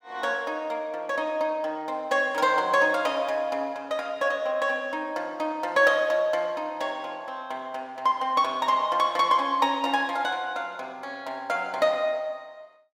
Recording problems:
none

